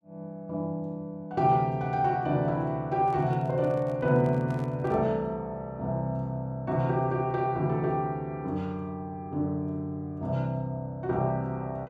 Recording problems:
handling noise; from 3 to 5 s; peak -10 dB vs average level

